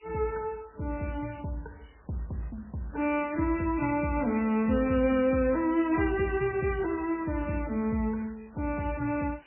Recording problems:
codec artefacts; MP3, then MP3, log-spectral distance 14 dB, nothing above 2.7 kHz
background hiss; SNR 27 dB

